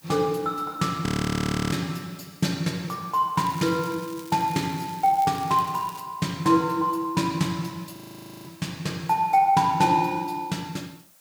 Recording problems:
hiss; SNR 27 dB
audio freezing; at 1 s for 0.5 s and at 8 s for 0.5 s
crackle; from 3.5 to 6 s; loose cable, SNR 20 dB

